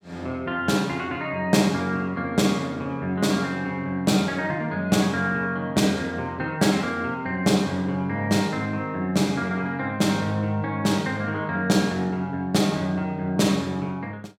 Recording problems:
none

